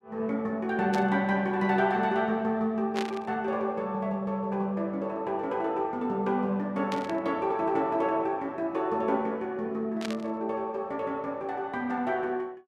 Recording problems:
burst of static; 4 times, first at 1 s; peak -2 dB vs average level

